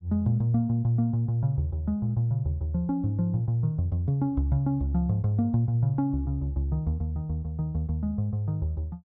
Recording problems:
none

